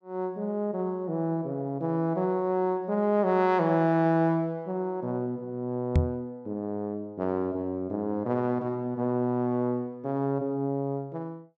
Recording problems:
microphone bump; at 6 s; peak +9 dB vs average level

